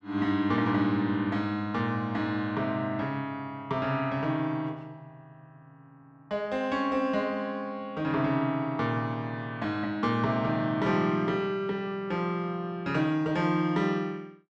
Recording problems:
none

